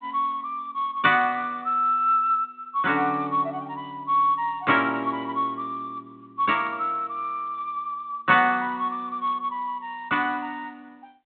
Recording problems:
phone line; 150 Hz to 3.7 kHz, G.726

